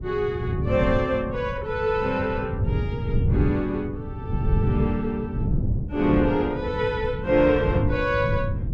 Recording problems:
wind on the microphone; below 150 Hz, SNR 3 dB

